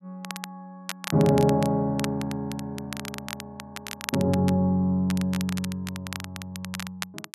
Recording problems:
crackle; vinyl, SNR 12 dB

